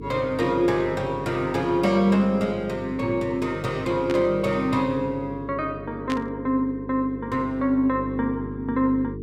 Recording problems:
hum; 50 Hz, harmonics up to 450 Hz, SNR 13 dB
static burst; at 4 s and at 6 s; peak -4 dB vs average level

